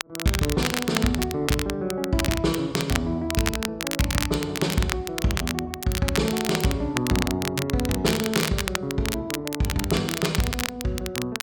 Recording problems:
crackle; vinyl, SNR 4 dB

